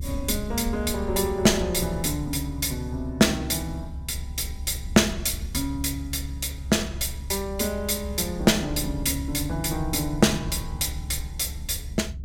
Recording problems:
rumble; below 84 Hz, strongest tone 68 Hz, SNR 9 dB

